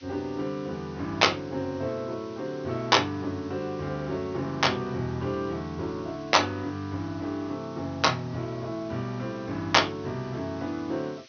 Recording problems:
treble missing; nothing above 6.2 kHz
hiss; SNR 23 dB

